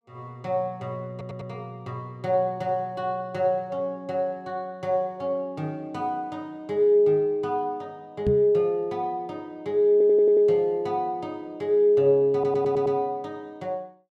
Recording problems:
stutter; at 1 s, at 10 s and at 12 s
microphone thump; at 8.5 s; peak +2 dB vs average level

